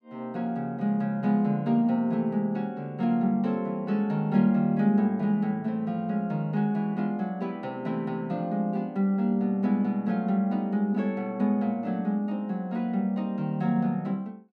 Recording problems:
none

